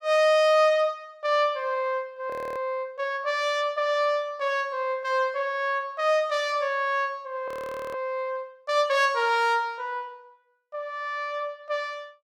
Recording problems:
audio freezing; at 2.5 s and at 7.5 s

